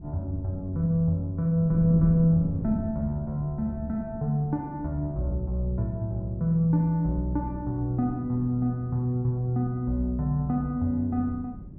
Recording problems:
wind on the microphone; below 200 Hz, SNR 13 dB

